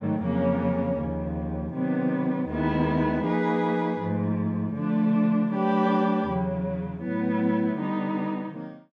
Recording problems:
none

